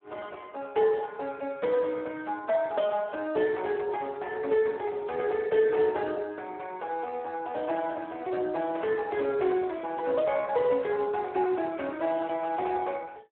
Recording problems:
telephone audio; 280 Hz to 3.1 kHz, Speex

